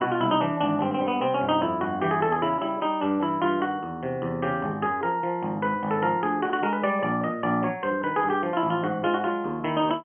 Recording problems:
low-pass filter; nothing above 3.2 kHz

